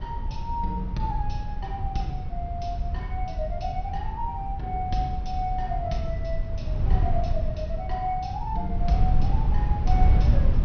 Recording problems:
low-pass filter; nothing above 6 kHz
wind noise; below 82 Hz, SNR -4 dB

